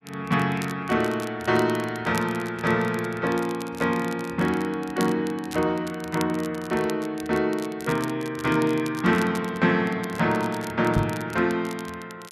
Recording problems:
crackle; vinyl, SNR 18 dB
knock on the microphone; at 11 s; peak +3 dB vs average level

